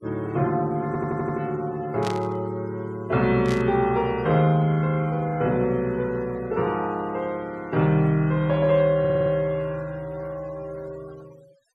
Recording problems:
noise reduction artefacts; signal-to-artefact ratio 25 dB
stutter; at 1 s and at 9 s
burst of static; at 2 s and at 3.5 s; peak -7 dB vs average level

